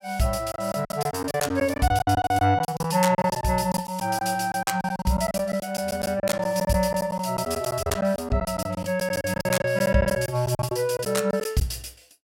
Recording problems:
lost packets; 15% of the sound replaced, filled with silence

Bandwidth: 16 kHz